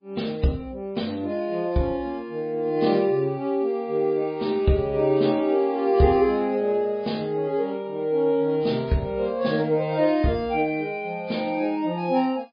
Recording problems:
lossy compression; MP3, log-spectral distance 2 dB, nothing above 5 kHz

